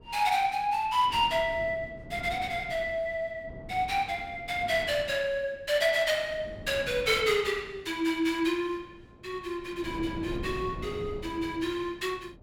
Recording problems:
wind on the microphone; below 340 Hz, SNR 16 dB

